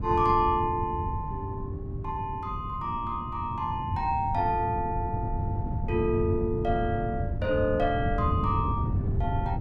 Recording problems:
wind noise; below 150 Hz, SNR 3 dB

